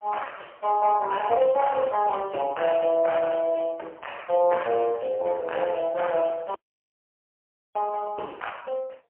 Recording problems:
telephone audio; 300 Hz to 3.1 kHz, AMR-NB, then MP3
audio cutting out; at 6.5 s for 1 s

